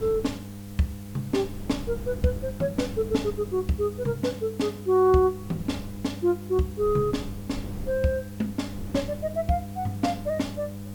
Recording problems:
hum; 50 Hz, harmonics up to 800 Hz, SNR 12 dB
background hiss; slope -2 dB per octave, SNR 22 dB
wind on the microphone; below 140 Hz, SNR 16 dB

